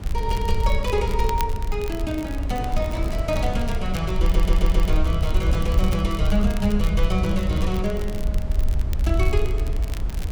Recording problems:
rumble; below 66 Hz, SNR -1 dB
wind on the microphone; below 470 Hz, SNR 10 dB
crackling; vinyl, SNR 16 dB
audio stuttering; at 4 s

